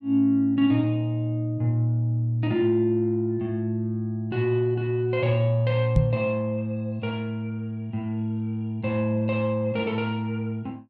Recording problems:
knock on the microphone; at 6 s; peak +7 dB vs average level

